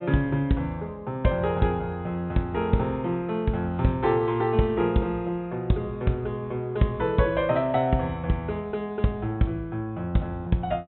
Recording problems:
treble cut off; nothing above 3.9 kHz

